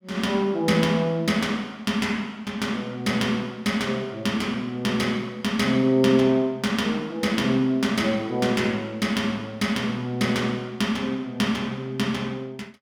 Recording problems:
none

